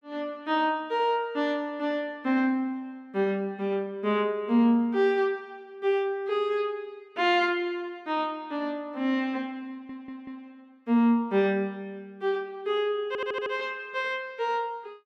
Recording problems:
audio stuttering; at 9.5 s and at 13 s

